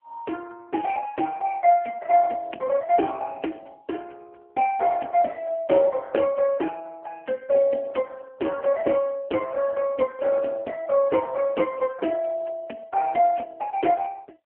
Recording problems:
telephone audio; 240 Hz to 3.1 kHz, AMR-NB

